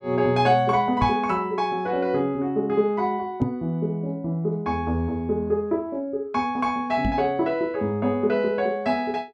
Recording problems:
knock on the microphone; at 1 s, at 3.5 s and at 7 s; peak +4 dB vs average level

